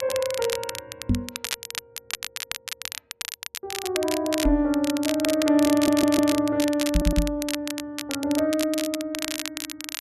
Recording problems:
crackle; vinyl, SNR 8 dB
microphone thump; at 1 s, at 4.5 s and at 7 s; peak +5 dB vs average level
audio stuttering; at 5.5 s and at 7 s

